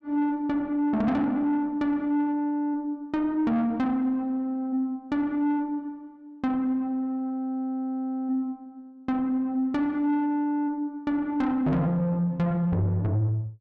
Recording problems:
distorted audio; soft clipping, signal-to-distortion ratio 12 dB

